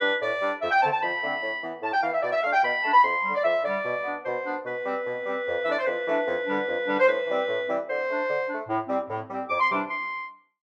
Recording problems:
none

